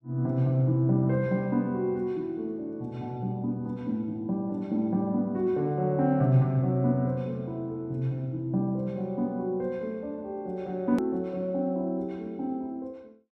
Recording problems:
hard cut with a click; at 11 s

